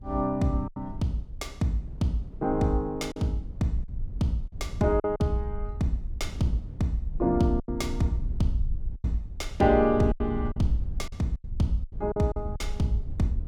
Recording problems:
rumble; below 64 Hz, SNR 9 dB
wind on the microphone; below 160 Hz, SNR 16 dB
lost packets; 7% of the sound replaced, filled with silence

